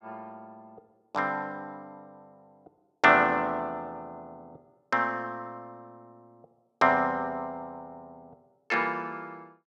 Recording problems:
none

